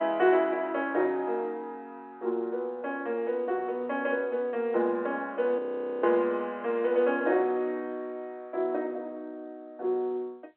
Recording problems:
phone line; 260 Hz to 3.4 kHz, G.711
audio freezing; at 5.5 s

